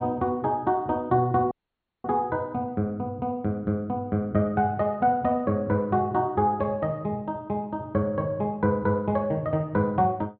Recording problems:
treble cut off; nothing above 4.4 kHz
dropout; at 1.5 s for 0.5 s

